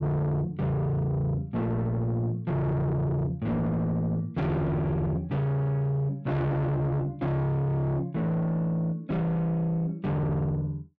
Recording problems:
distortion; soft clipping, signal-to-distortion ratio 7 dB

